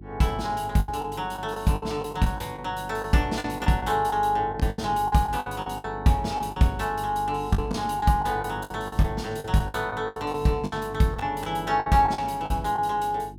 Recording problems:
hum; 50 Hz, harmonics up to 350 Hz, SNR 16 dB
packet loss; 12% of the sound replaced, filled with the last packet

